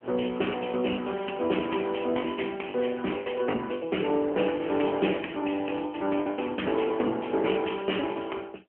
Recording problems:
phone line; 220 Hz to 3.1 kHz, AMR-NB
lost packets; 10% of the sound replaced, filled with the last packet

